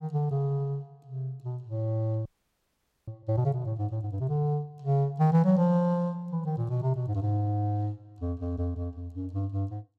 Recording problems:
frozen audio; at 2.5 s for 1 s

